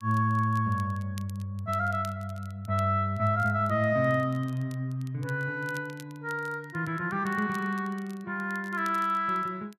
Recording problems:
crackling; vinyl, SNR 25 dB

